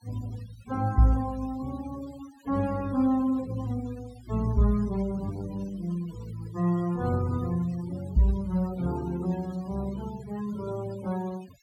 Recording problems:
denoising artefacts; signal-to-artefact ratio 21 dB

